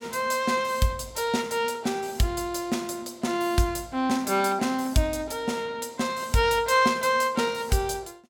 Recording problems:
none

